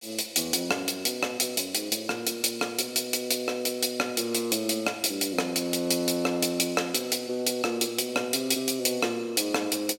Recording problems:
none

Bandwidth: 16.5 kHz